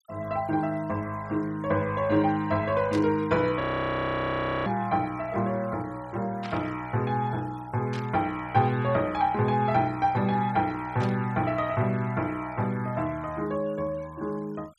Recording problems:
noise reduction artefacts; signal-to-artefact ratio 25 dB
burst of static; 4 times, first at 3 s; peak -8 dB vs average level
frozen audio; at 3.5 s for 1 s

